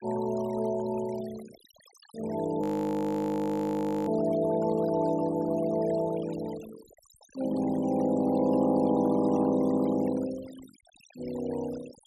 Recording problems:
denoising artefacts; signal-to-artefact ratio 21 dB
audio freezing; at 2.5 s for 1.5 s

